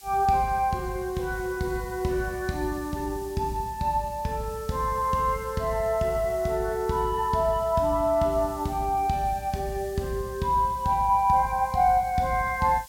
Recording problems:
hiss; slope +2 dB per octave, SNR 22 dB

